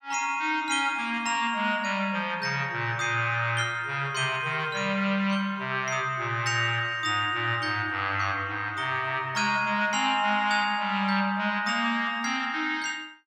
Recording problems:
none

